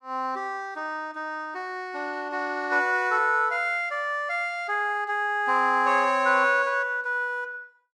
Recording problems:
none

